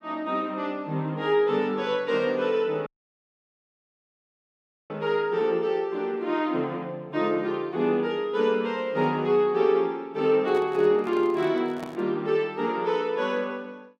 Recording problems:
audio cutting out; at 3 s for 2 s
handling noise; from 10 to 12 s; peak -9 dB vs average level

